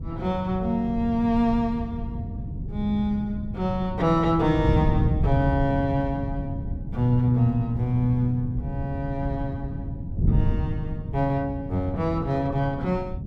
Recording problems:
wind on the microphone; below 150 Hz, SNR 5 dB

